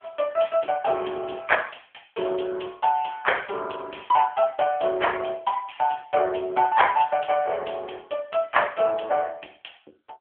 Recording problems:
phone line; 320 Hz to 3.4 kHz, AMR-NB

